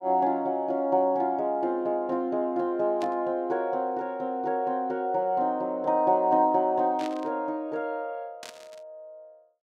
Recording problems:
static burst; at 3 s, at 7 s and at 8.5 s; peak -10 dB vs average level

